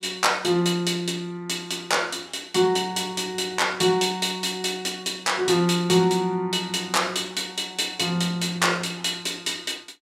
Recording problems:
none

